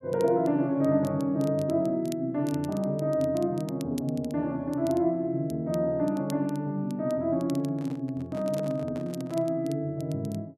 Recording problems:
crackle; vinyl, SNR 23 dB
microphone handling noise; from 7.5 to 9.5 s; peak -9 dB vs average level

